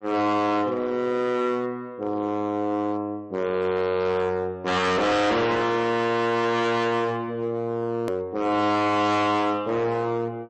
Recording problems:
lossy compression; MP3, log-spectral distance 2 dB, nothing above 13.1 kHz
distortion; hard clipping, signal-to-distortion ratio 6 dB
click at an edit; at 8 s

